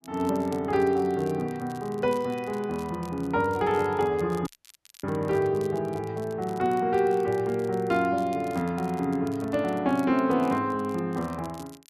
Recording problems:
crackle; vinyl, SNR 25 dB
audio cutting out; at 4.5 s for 0.5 s

